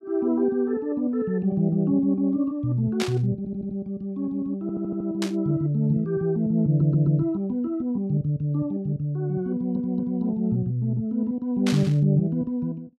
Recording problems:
burst of static; at 3 s, at 5 s and at 12 s; peak -1 dB vs average level
audio stuttering; 4 times, first at 3.5 s

